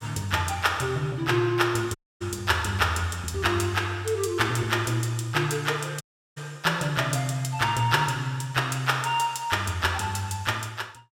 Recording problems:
dropout; at 2 s and at 6 s

